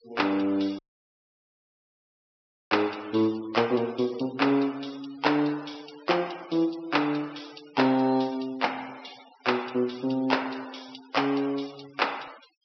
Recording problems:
treble cut off; nothing above 5.5 kHz
noise reduction artefacts; signal-to-artefact ratio 21 dB
audio cutting out; at 1 s for 2 s

